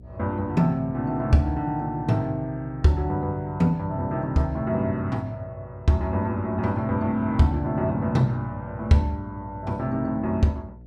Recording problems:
mains hum; 60 Hz, harmonics up to 660 Hz, SNR 20 dB

